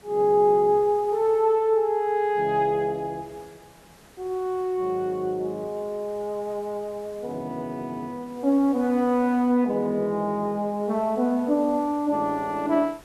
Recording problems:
hiss; slope -4 dB per octave, SNR 27 dB

